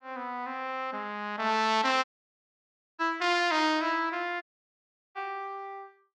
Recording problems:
dropout; at 2 s for 1 s and at 4.5 s for 0.5 s

